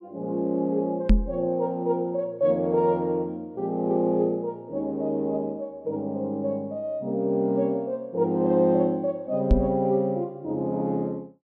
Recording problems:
knock on the microphone; at 1 s and at 9.5 s; peak +9 dB vs average level

